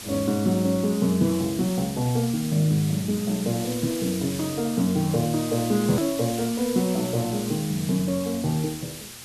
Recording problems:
hum; 60 Hz, harmonics up to 1.2 kHz, SNR 27 dB
background hiss; slope +1 dB per octave, SNR 11 dB
hard cut with a click; at 6 s

